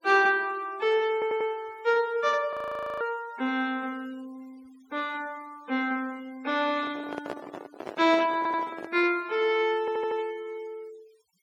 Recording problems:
noise reduction artefacts; signal-to-artefact ratio 26 dB
audio stuttering; at 1 s, at 8.5 s and at 10 s
audio freezing; at 2.5 s
microphone handling noise; from 6.5 to 9 s; peak -4 dB vs average level

